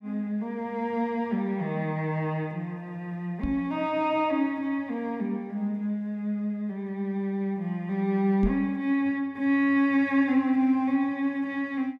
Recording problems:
knock on the microphone; at 3.5 s and at 8.5 s; peak +1 dB vs average level

